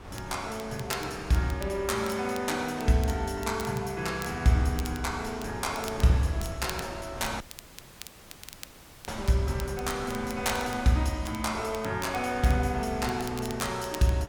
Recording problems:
wind noise; below 820 Hz, SNR 15 dB
crackling; vinyl, SNR 17 dB
dropout; at 7.5 s for 1.5 s

